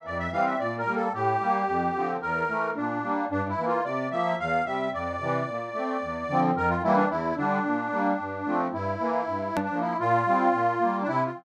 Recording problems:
hard cut with a click; at 9.5 s

